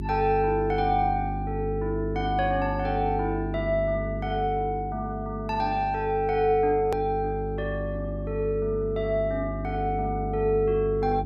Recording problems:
hum; 50 Hz, harmonics up to 400 Hz, SNR 7 dB
hard cut with a click; at 7 s

